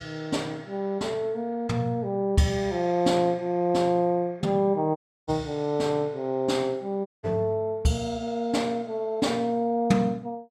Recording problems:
dropout; at 5 s and at 7 s

